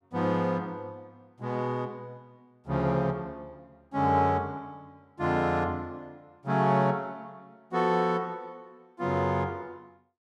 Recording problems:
none

